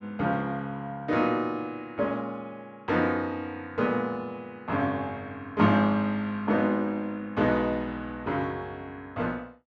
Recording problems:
none

